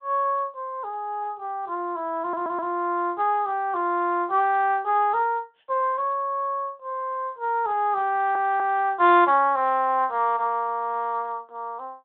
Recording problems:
phone line; 280 Hz to 3.8 kHz, Speex
stutter; at 2 s and at 8 s

